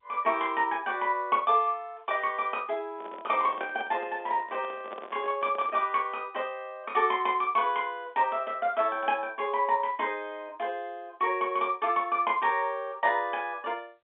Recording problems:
telephone audio; 240 Hz to 3.6 kHz, G.711
handling noise; from 3 to 6 s; peak -6 dB vs average level

